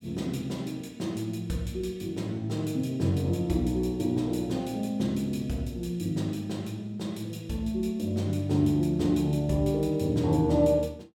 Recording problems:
none

